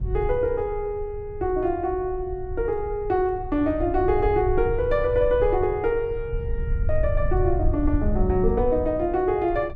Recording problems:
low-frequency rumble; below 78 Hz, SNR 7 dB

